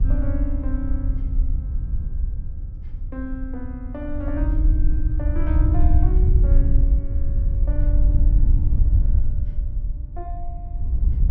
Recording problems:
mains hum; 60 Hz, harmonics up to 300 Hz, SNR 20 dB
wind noise; below 66 Hz, SNR -12 dB

